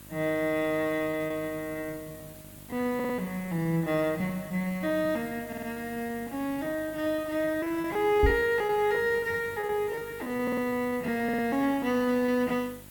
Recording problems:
electrical hum; 50 Hz, harmonics up to 1.6 kHz, SNR 22 dB
background hiss; SNR 19 dB
packet loss; 16% of the sound replaced, filled with repeated pitch periods
stutter; 4 times, first at 3 s
knock on the microphone; at 8 s; peak +7 dB vs average level

